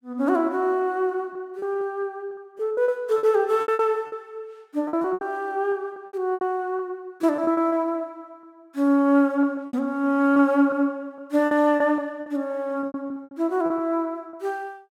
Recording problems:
lost packets; 11% of the sound replaced, filled with repeated pitch periods

